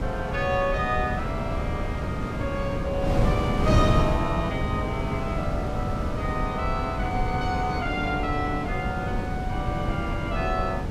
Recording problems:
wind on the microphone; below 250 Hz, SNR 0 dB

